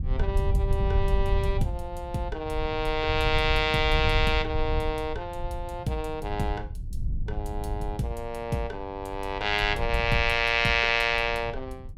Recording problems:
low-frequency rumble; below 86 Hz, SNR 6 dB

